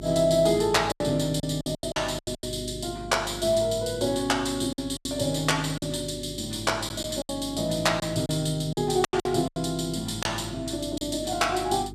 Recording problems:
electrical hum; 50 Hz, harmonics up to 400 Hz, SNR 15 dB
packet loss; 9% of the sound replaced, filled with silence

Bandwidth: 14.5 kHz